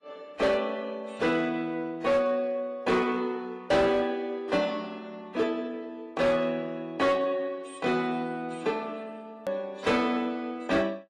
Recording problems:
lossy compression; AAC, log-spectral distance 2 dB
distorted audio; hard clipping, signal-to-distortion ratio 12 dB
edit click; at 9.5 s

